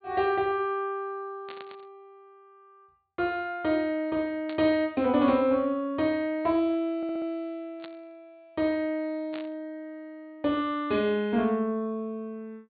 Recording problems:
low-pass filter; nothing above 4.6 kHz
static burst; 4 times, first at 1.5 s; peak -10 dB vs average level
audio stuttering; at 7 s

